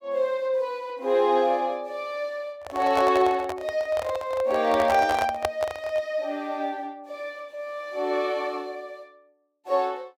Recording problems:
microphone handling noise; from 2.5 to 6 s; peak +3 dB vs average level

